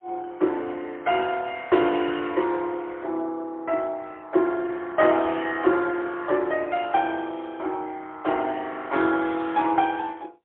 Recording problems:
telephone audio; 280 Hz to 3.5 kHz, AMR-NB, then MP3

